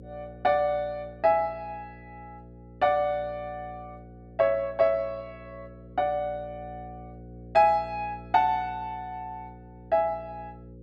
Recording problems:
electrical hum; 60 Hz, harmonics up to 540 Hz, SNR 20 dB

